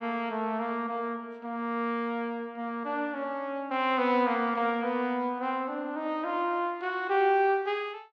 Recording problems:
none

